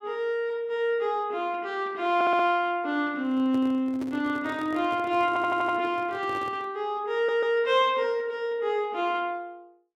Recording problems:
audio stuttering; at 2 s, at 5.5 s and at 7 s
microphone handling noise; from 3 to 6.5 s; peak -8 dB vs average level

